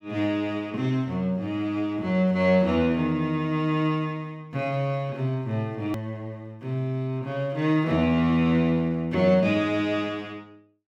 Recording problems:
click at an edit; at 6 s

